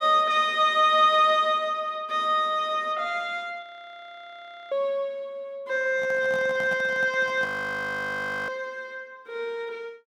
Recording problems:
frozen audio; at 3.5 s for 1 s and at 7.5 s for 1 s
microphone handling noise; from 6 to 7.5 s; peak -11 dB vs average level

